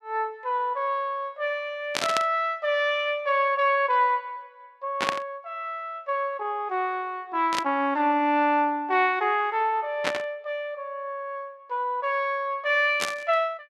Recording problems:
burst of static; 5 times, first at 2 s; peak +4 dB vs average level

